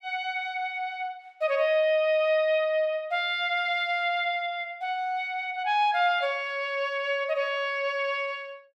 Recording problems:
none

